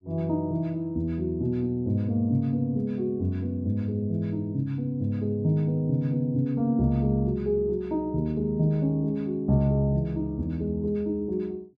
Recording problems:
none

